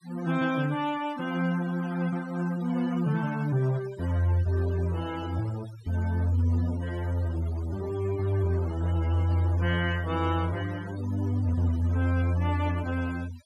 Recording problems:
denoising artefacts; signal-to-artefact ratio 19 dB

